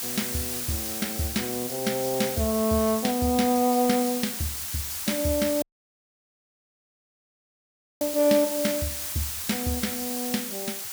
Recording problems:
background hiss; slope +2 dB per octave, SNR 4 dB
audio cutting out; at 5.5 s for 2.5 s

